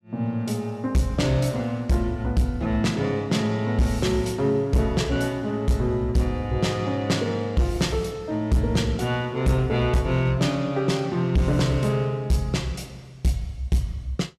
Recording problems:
distortion; hard clipping, uneven, signal-to-distortion ratio 10 dB

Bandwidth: 14 kHz